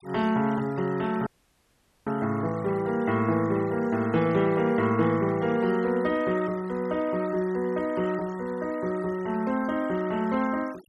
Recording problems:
noise reduction artefacts; signal-to-artefact ratio 21 dB
dropout; at 1.5 s for 1 s

